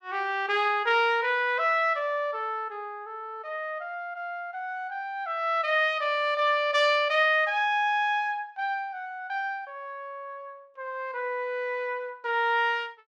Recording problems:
none

